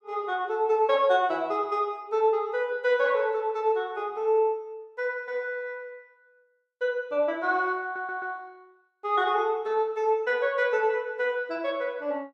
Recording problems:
stutter; at 8 s

